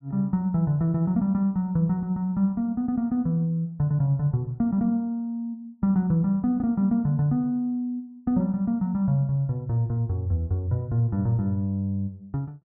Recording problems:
none

